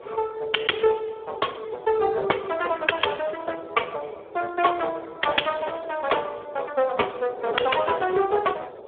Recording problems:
telephone audio; 340 Hz to 3.4 kHz, Speex
wind on the microphone; below 600 Hz, SNR 16 dB

